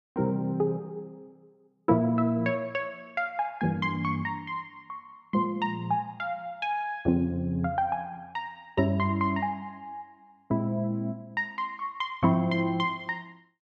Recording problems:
none

